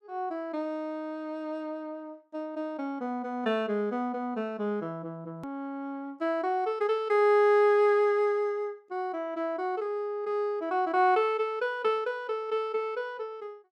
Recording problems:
edit click; at 5.5 s

